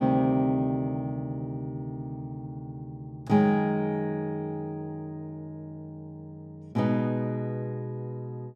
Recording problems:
none

